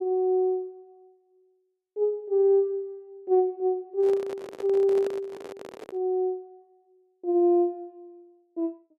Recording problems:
microphone handling noise; from 4 to 6 s; peak -6 dB vs average level

